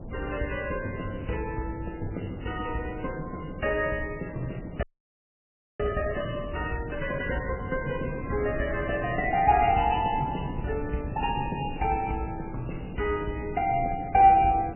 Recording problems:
lossy codec; MP3, log-spectral distance 4 dB, nothing above 3 kHz
wind noise; below 250 Hz, SNR 12 dB
audio freezing; at 5 s for 1 s

